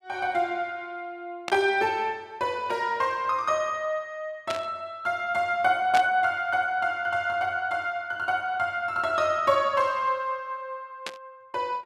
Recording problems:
burst of static; 4 times, first at 1.5 s; peak -1 dB vs average level

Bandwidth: 14.5 kHz